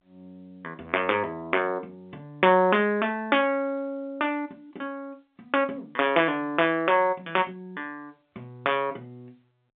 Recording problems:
telephone audio; 280 Hz to 3.6 kHz, G.711

